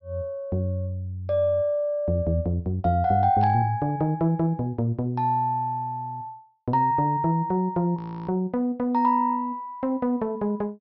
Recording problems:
treble cut off; nothing above 5.6 kHz
static burst; at 3.5 s; peak -16 dB vs average level
audio freezing; at 8 s

